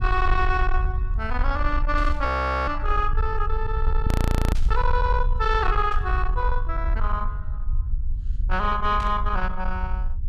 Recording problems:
distortion; soft clipping, signal-to-distortion ratio 11 dB
low-frequency rumble; below 60 Hz, SNR 1 dB
static burst; 4 times, first at 2 s; peak -10 dB vs average level
audio freezing; at 2.5 s and at 4 s

